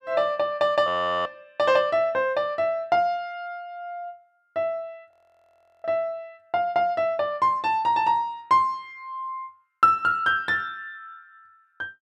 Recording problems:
audio freezing; at 1 s and at 5 s for 0.5 s

